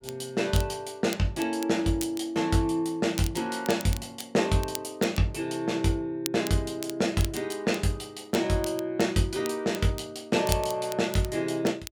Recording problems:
crackling; vinyl, SNR 14 dB

